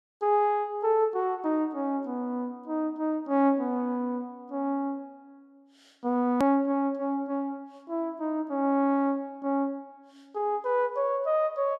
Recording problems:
edit click; at 6.5 s

